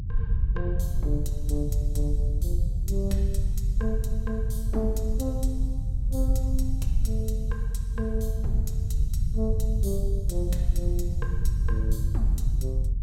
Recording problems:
rumble; below 74 Hz, SNR -6 dB

